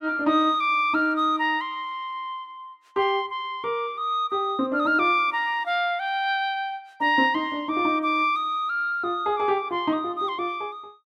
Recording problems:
none

